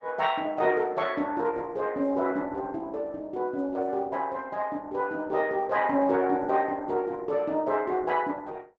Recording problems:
codec artefacts; Opus, log-spectral distance 3 dB

